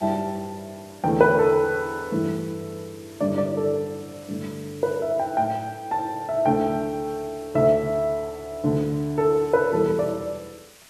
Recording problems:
hiss; slope +1 dB per octave, SNR 24 dB

